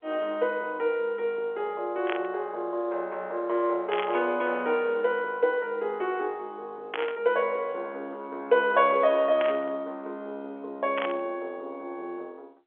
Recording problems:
telephone audio; 300 Hz to 3.5 kHz, G.711
static burst; 5 times, first at 2 s; peak 0 dB vs average level

